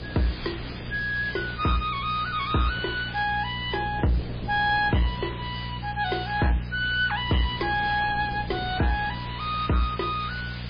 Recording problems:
lossy codec; MP3, log-spectral distance 14 dB, nothing above 4.1 kHz
distorted audio; soft clipping, signal-to-distortion ratio 11 dB
electrical hum; 60 Hz, harmonics up to 480 Hz, SNR 10 dB
hiss; SNR 14 dB
wind noise; below 380 Hz, SNR 16 dB

